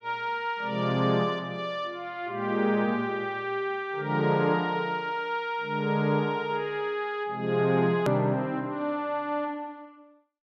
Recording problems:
edit click; at 8 s

